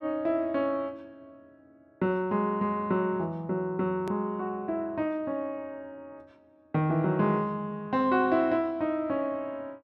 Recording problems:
click at an edit; at 4 s

